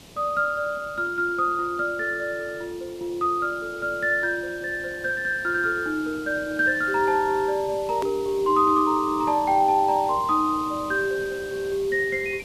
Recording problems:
hiss; SNR 19 dB
edit click; at 8 s

